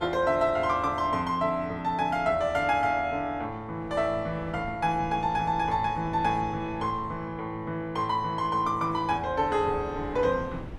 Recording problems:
wind noise; below 350 Hz, SNR 18 dB

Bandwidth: 14 kHz